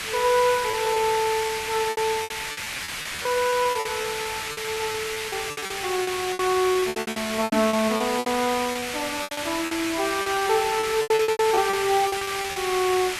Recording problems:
hiss; SNR 4 dB
lost packets; 18% of the sound replaced, filled with repeated pitch periods
microphone bump; at 7.5 s; peak 0 dB vs average level

